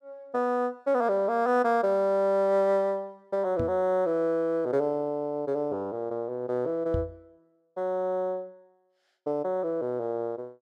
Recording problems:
knock on the microphone; at 3.5 s and at 7 s; peak 0 dB vs average level

